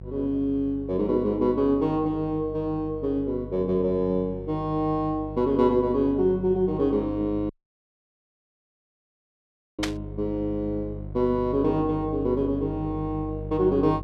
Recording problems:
hum; 50 Hz, harmonics up to 550 Hz, SNR 12 dB
audio cutting out; at 7.5 s for 2.5 s
burst of static; at 10 s; peak +2 dB vs average level

